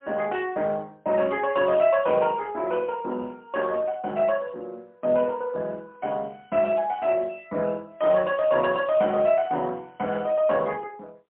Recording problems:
telephone audio; 240 Hz to 3.3 kHz, AMR-NB, then MP3

